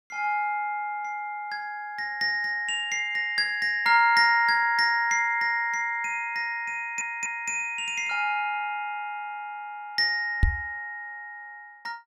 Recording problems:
stutter; at 7 s
microphone thump; at 10 s; peak +6 dB vs average level

